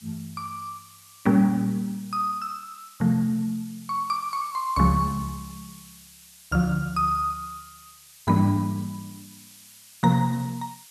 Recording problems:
background hiss; slope +4 dB per octave, SNR 21 dB

